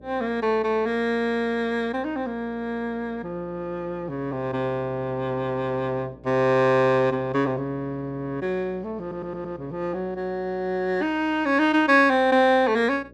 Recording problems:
electrical hum; 60 Hz, harmonics up to 600 Hz, SNR 24 dB
audio stuttering; at 9 s

